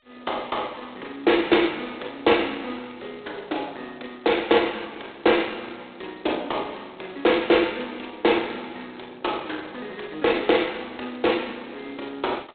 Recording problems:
telephone audio; 280 Hz to 3.7 kHz, G.726

